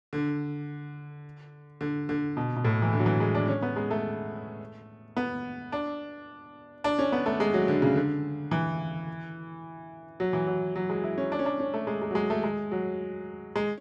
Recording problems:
none

